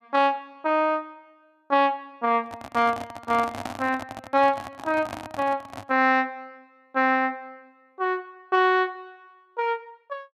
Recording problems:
handling noise; from 2.5 to 6 s; peak -3 dB vs average level

